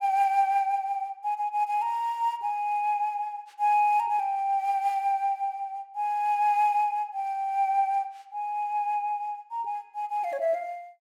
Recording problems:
none

